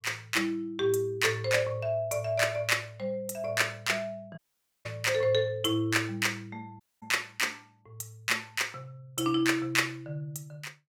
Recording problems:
audio cutting out; at 4.5 s and at 7 s

